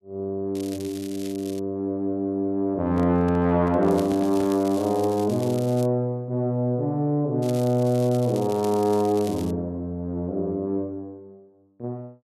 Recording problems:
crackling; from 0.5 to 1.5 s, from 4 to 6 s and from 7.5 to 9.5 s; loose cable, SNR 19 dB
microphone handling noise; from 3 to 4.5 s; peak -6 dB vs average level

